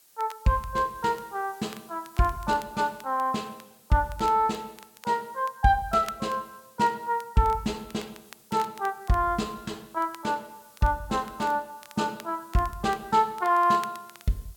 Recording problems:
hiss; slope 0 dB per octave, SNR 27 dB
crackling; vinyl, SNR 23 dB

